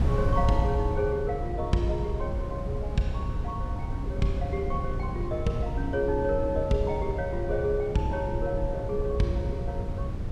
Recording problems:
hum; 60 Hz, harmonics up to 480 Hz, SNR 12 dB
wind noise; below 120 Hz, SNR 3 dB

